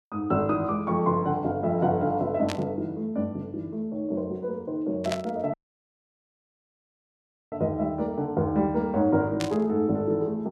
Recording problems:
static burst; at 2.5 s, at 5 s and at 9.5 s; peak -2 dB vs average level
dropout; at 5.5 s for 2 s

